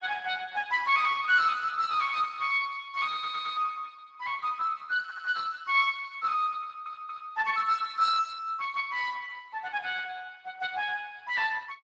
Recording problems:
lossy codec; Speex, log-spectral distance 4 dB
audio stuttering; at 3 s, at 5 s and at 6.5 s

